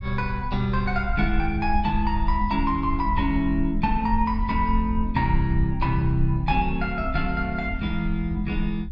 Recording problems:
low-frequency rumble; below 68 Hz, SNR 5 dB

